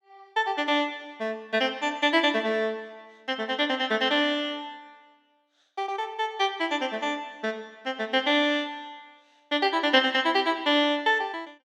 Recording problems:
none

